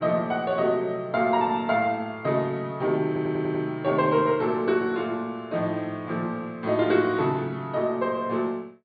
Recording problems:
treble cut off; nothing above 4.6 kHz
audio stuttering; at 3 s

